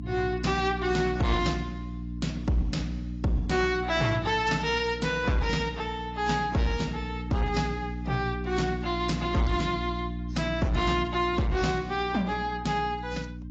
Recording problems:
codec artefacts; AAC, log-spectral distance 3 dB, nothing above 7.3 kHz
distorted audio; hard clipping, signal-to-distortion ratio 11 dB
electrical hum; 60 Hz, harmonics up to 300 Hz, SNR 8 dB

